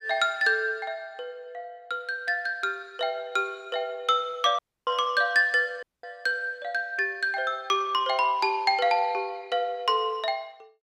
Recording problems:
dropout; at 4.5 s and at 6 s

